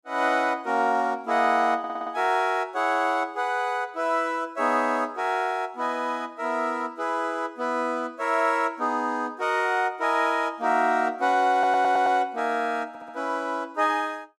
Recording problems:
audio stuttering; at 2 s, at 12 s and at 13 s

